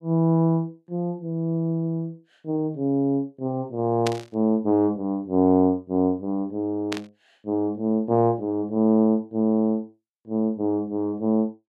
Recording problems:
static burst; at 4 s and at 7 s; peak -2 dB vs average level

